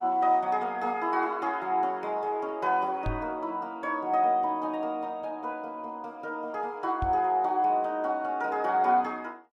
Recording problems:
codec artefacts; Opus, log-spectral distance 2 dB
microphone thump; at 3 s and at 7 s; peak -1 dB vs average level

